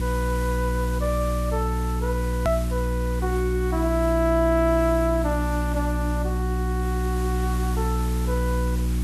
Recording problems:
hum; 60 Hz, harmonics up to 360 Hz, SNR 0 dB
hiss; slope -2 dB per octave, SNR 14 dB
click at an edit; at 2.5 s

